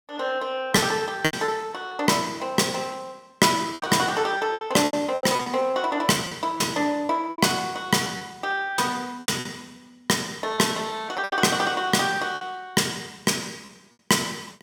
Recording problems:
packet loss; 9% of the sound replaced, filled with repeated pitch periods

